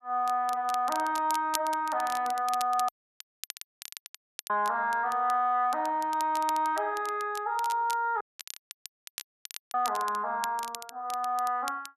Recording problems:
crackling; vinyl, SNR 14 dB
audio cutting out; at 3 s for 1.5 s and at 8 s for 1.5 s

